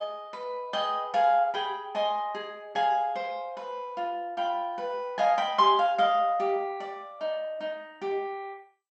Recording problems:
lossy codec; MP2, log-spectral distance 2 dB

